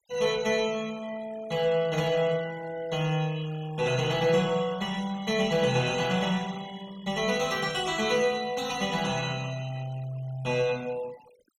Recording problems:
noise reduction artefacts; signal-to-artefact ratio 19 dB

